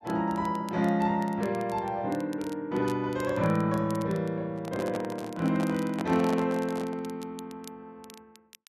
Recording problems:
crackle; vinyl, SNR 23 dB
handling noise; from 4.5 to 7 s; peak -3 dB vs average level

